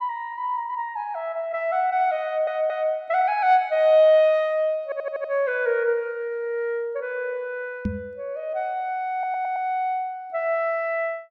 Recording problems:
audio stuttering; at 2.5 s, at 5 s and at 9 s
microphone bump; at 8 s; peak +1 dB vs average level

